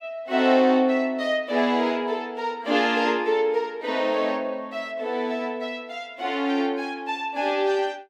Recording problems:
none

